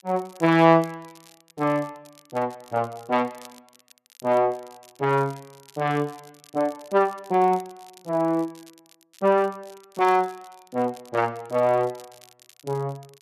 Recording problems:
crackling; vinyl, SNR 27 dB

